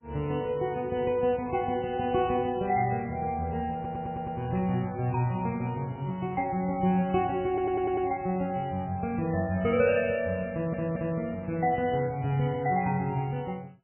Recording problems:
lossy compression; MP3, log-spectral distance 3 dB, nothing above 2.6 kHz
audio stuttering; at 4 s, at 7.5 s and at 11 s
burst of static; at 4.5 s, at 8.5 s and at 13 s; peak -14 dB vs average level

